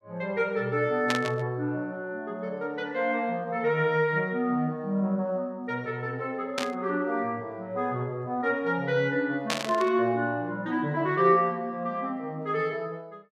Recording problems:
burst of static; at 1 s, at 6.5 s and at 9.5 s; peak +4 dB vs average level

